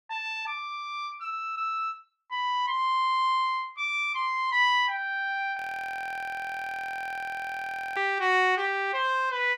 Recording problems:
audio freezing; at 5.5 s for 2.5 s

